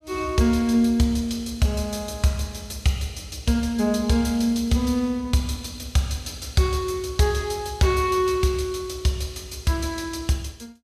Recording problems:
none

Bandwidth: 14.5 kHz